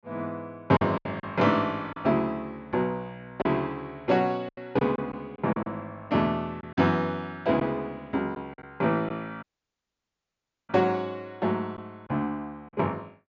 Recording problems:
treble cut off; nothing above 7.3 kHz
lost packets; 5% of the sound replaced, filled with silence
dropout; at 9.5 s for 1.5 s

